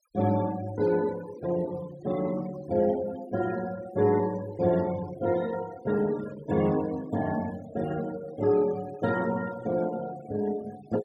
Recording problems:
denoising artefacts; signal-to-artefact ratio 19 dB

